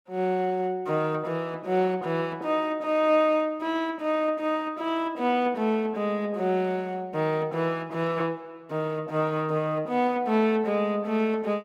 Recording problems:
none

